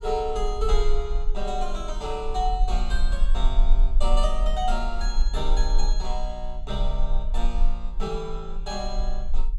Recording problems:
low-frequency rumble; below 36 Hz, strongest tone 20 Hz, SNR -3 dB

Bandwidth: 14.5 kHz